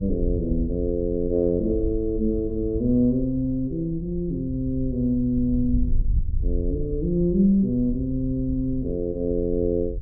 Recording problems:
wind noise; below 62 Hz, SNR 8 dB

